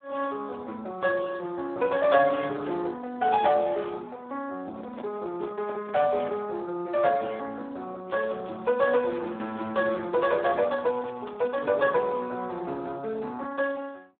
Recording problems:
phone line; 240 Hz to 2.8 kHz, Speex
crackle; at 2 s, from 8 to 10 s and from 10 to 12 s; loose cable, SNR 27 dB
handling noise; from 4.5 to 6.5 s; peak -8 dB vs average level

